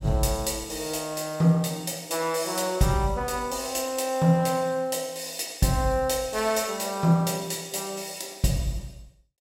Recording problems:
none

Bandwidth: 16.5 kHz